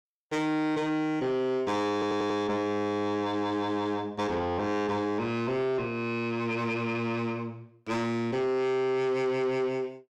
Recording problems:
distorted audio; soft clipping, signal-to-distortion ratio 10 dB
stutter; at 2 s

